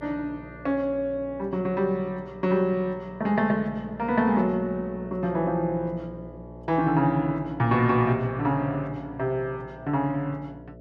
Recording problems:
hum; 60 Hz, harmonics up to 660 Hz, SNR 18 dB

